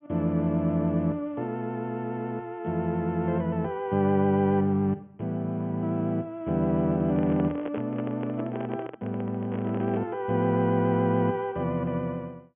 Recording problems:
treble missing; nothing above 3.3 kHz
microphone handling noise; from 7 to 10 s; peak -5 dB vs average level

